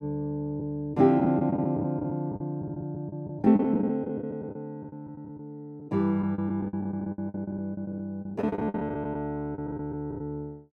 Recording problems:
packet loss; 14% of the sound replaced, filled with the last packet

